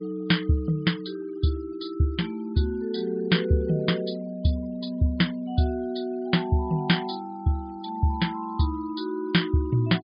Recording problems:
low-pass filter; nothing above 5 kHz
denoising artefacts; signal-to-artefact ratio 26 dB

